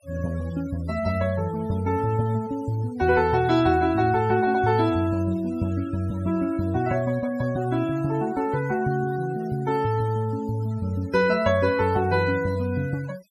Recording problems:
denoising artefacts; signal-to-artefact ratio 20 dB

